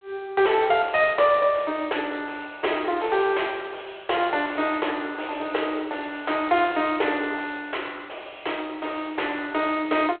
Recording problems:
telephone audio; 320 Hz to 3.4 kHz, G.726
distortion; soft clipping, signal-to-distortion ratio 7 dB

